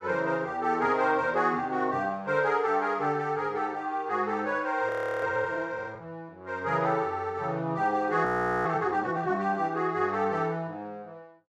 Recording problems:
frozen audio; at 5 s and at 8.5 s

